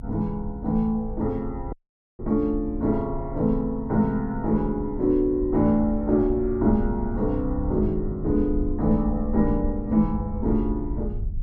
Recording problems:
rumble; below 72 Hz, SNR 10 dB
audio cutting out; at 1.5 s

